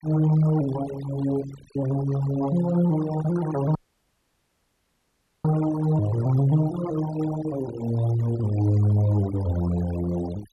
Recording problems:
denoising artefacts; signal-to-artefact ratio 15 dB
dropout; at 4 s for 1.5 s

